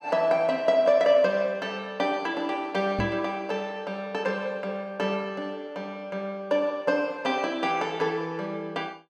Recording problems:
microphone bump; at 3 s; peak 0 dB vs average level

